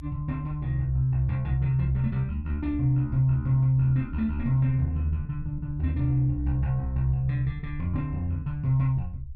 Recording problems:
rumble; below 76 Hz, SNR 14 dB

